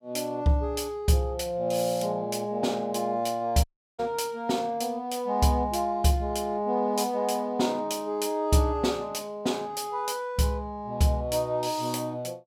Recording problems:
dropout; at 3.5 s

